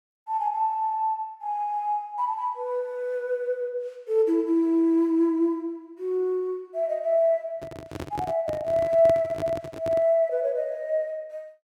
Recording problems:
microphone handling noise; from 7.5 to 10 s; peak -4 dB vs average level

